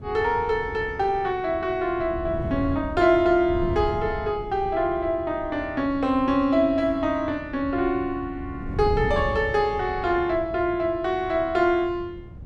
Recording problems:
wind on the microphone; below 170 Hz, SNR 12 dB

